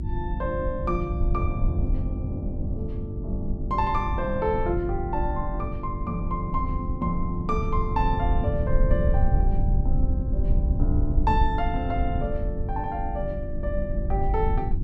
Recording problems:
electrical hum; 50 Hz, harmonics up to 350 Hz, SNR 7 dB
rumble; below 76 Hz, SNR -1 dB

